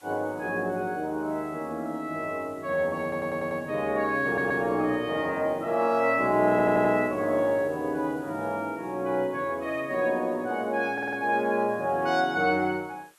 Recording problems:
background hiss; SNR 30 dB
stutter; 4 times, first at 3 s

